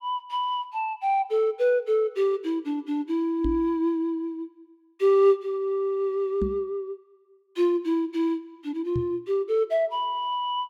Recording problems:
microphone thump; at 3.5 s, at 6.5 s and at 9 s; peak 0 dB vs average level

